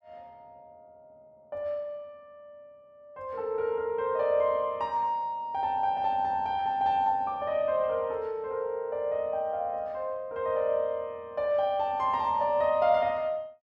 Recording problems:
none

